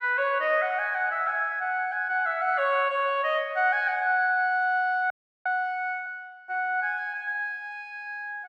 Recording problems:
audio freezing; at 5 s

